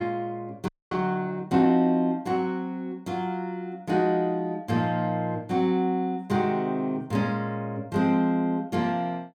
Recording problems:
audio freezing; at 0.5 s

